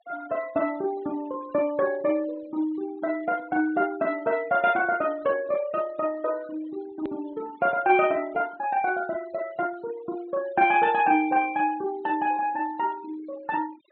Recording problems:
low-pass filter; nothing above 4.2 kHz
noise reduction artefacts; signal-to-artefact ratio 21 dB
edit click; at 7 s

